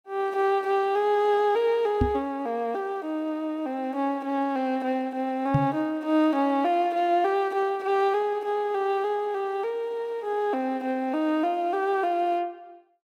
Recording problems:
microphone thump; at 2 s and at 5.5 s; peak +6 dB vs average level

